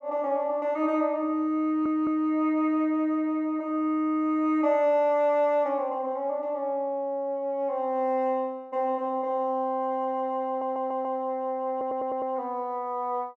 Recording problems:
audio stuttering; at 1.5 s, at 10 s and at 12 s

